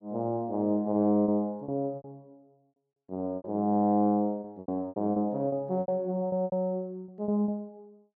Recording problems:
packet loss; 12% of the sound replaced, filled with repeated pitch periods

